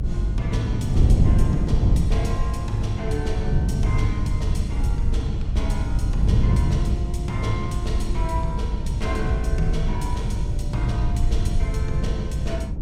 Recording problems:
rumble; below 70 Hz, SNR -2 dB
wind noise; below 150 Hz, SNR -4 dB

